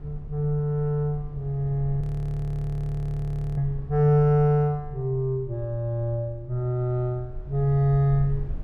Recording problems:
rumble; below 72 Hz, SNR 14 dB
frozen audio; at 2 s for 1.5 s

